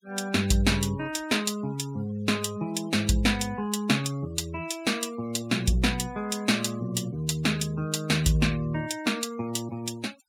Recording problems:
noise reduction artefacts; signal-to-artefact ratio 20 dB

